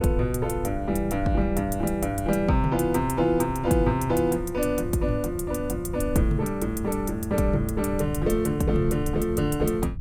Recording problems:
low-frequency rumble; below 110 Hz, SNR 10 dB

